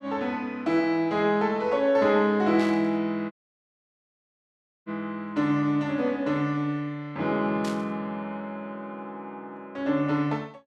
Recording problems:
burst of static; at 2.5 s and at 7.5 s; peak -9 dB vs average level
audio cutting out; at 3.5 s for 1.5 s

